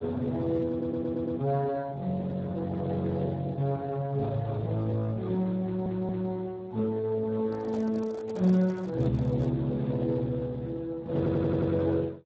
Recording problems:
codec artefacts; Speex, log-spectral distance 3 dB
stutter; at 0.5 s, at 5.5 s and at 11 s
handling noise; from 7.5 to 9.5 s; peak -7 dB vs average level

